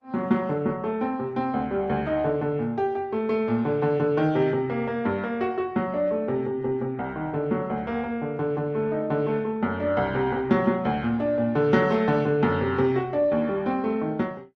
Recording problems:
codec artefacts; Opus, log-spectral distance 2 dB

